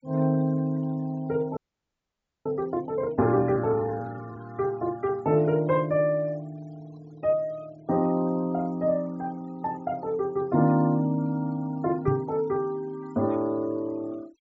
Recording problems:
treble cut off; nothing above 7.4 kHz
denoising artefacts; signal-to-artefact ratio 27 dB
frozen audio; at 1.5 s for 1 s
microphone thump; at 12 s; peak +4 dB vs average level

